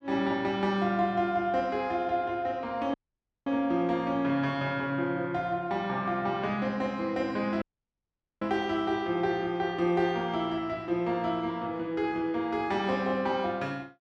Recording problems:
dropout; at 3 s for 0.5 s and at 7.5 s for 1 s

